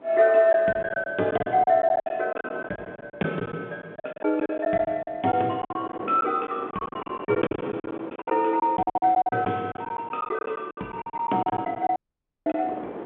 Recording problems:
phone line; 220 Hz to 3.8 kHz, G.711
wind noise; below 710 Hz, SNR 17 dB
packet loss; 16% of the sound replaced, filled with silence
audio cutting out; at 12 s for 0.5 s

